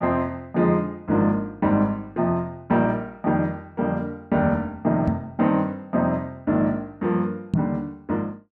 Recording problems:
microphone bump; at 5 s and at 7.5 s; peak +5 dB vs average level

